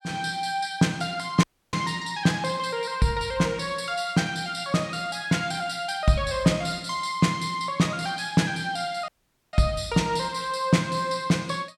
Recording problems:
audio cutting out; at 1.5 s and at 9 s

